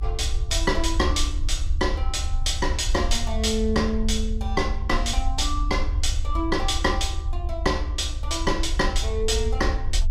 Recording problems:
rumble; below 70 Hz, SNR 3 dB

